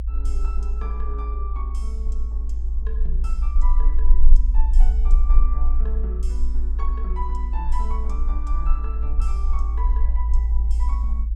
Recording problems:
rumble; below 54 Hz, strongest tone 18 Hz, SNR -14 dB

